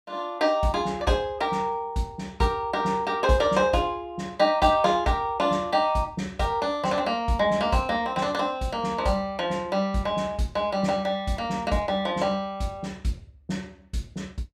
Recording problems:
none

